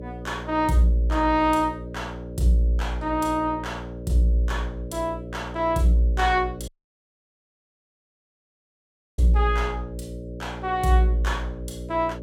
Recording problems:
electrical hum; 60 Hz, harmonics up to 600 Hz, SNR 12 dB
dropout; at 6.5 s for 2.5 s

